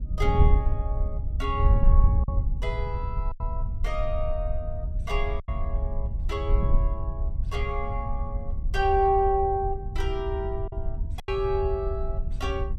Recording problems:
wind noise; below 70 Hz, SNR -1 dB
packet loss; 3% of the sound replaced, filled with silence

